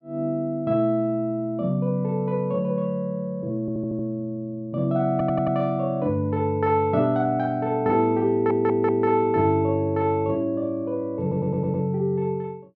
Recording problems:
audio stuttering; 4 times, first at 3.5 s

